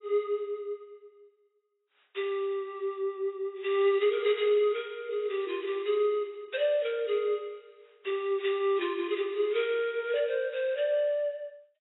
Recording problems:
lossy codec; AAC, log-spectral distance 2 dB, nothing above 3.8 kHz

